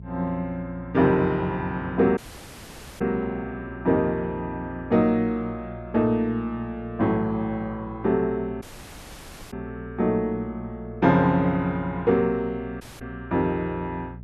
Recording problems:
hum; 60 Hz, harmonics up to 420 Hz, SNR 16 dB
audio cutting out; at 2 s for 1 s, at 8.5 s for 1 s and at 13 s

